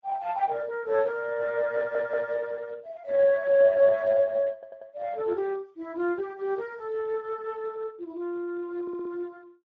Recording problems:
lossy codec; Speex, log-spectral distance 3 dB
stutter; at 2 s, at 4.5 s and at 9 s

